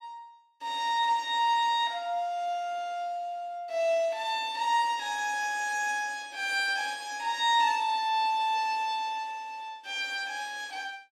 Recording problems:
none

